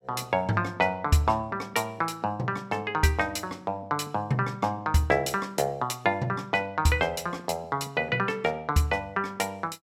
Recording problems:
none

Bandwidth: 16.5 kHz